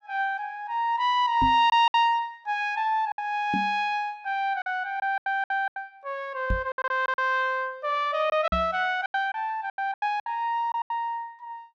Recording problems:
packet loss; 9% of the sound replaced, filled with silence
knock on the microphone; 4 times, first at 1.5 s; peak +1 dB vs average level

